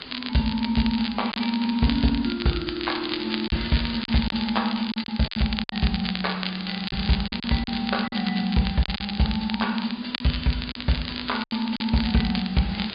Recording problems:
treble cut off; nothing above 4.9 kHz
lossy compression; MP3, log-spectral distance 12 dB
background hiss; SNR 13 dB
crackling; vinyl, SNR 8 dB
lost packets; 7% of the sound replaced, filled with silence

